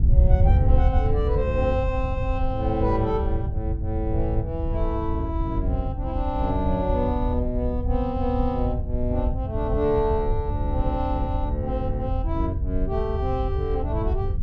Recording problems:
wind on the microphone; below 88 Hz, SNR -1 dB

